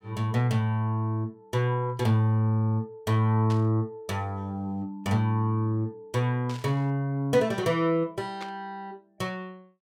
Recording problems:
burst of static; at 3.5 s, at 6.5 s and at 8.5 s; peak -9 dB vs average level

